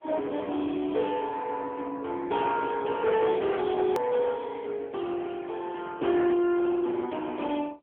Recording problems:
phone line; 240 Hz to 3.3 kHz, AMR-NB
distortion; soft clipping, signal-to-distortion ratio 11 dB
click at an edit; at 4 s

